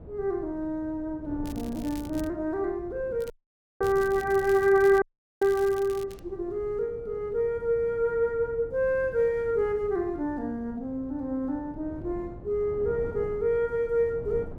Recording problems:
wind on the microphone; below 290 Hz, SNR 17 dB
crackling; at 1.5 s and from 3 to 6 s; loose cable, SNR 21 dB
audio cutting out; at 3.5 s for 0.5 s and at 5 s

